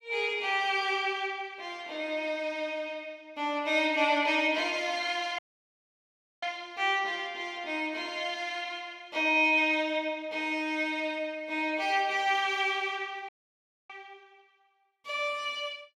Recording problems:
dropout; at 5.5 s for 1 s and at 13 s for 0.5 s

